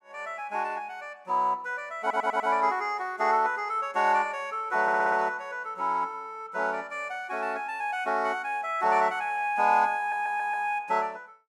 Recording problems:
stutter; at 2 s, at 5 s and at 10 s

